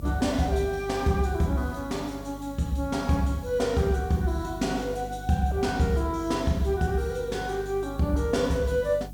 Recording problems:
hum; 50 Hz, harmonics up to 300 Hz, SNR 14 dB
hiss; SNR 27 dB

